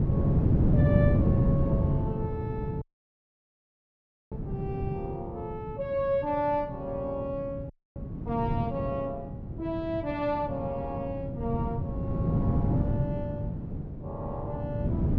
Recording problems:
wind noise; below 210 Hz, SNR -4 dB
audio cutting out; at 3 s for 1.5 s and at 7.5 s

